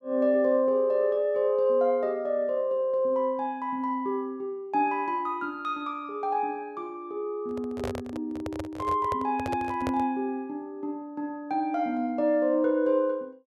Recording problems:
microphone handling noise; from 7.5 to 10 s; peak -2 dB vs average level

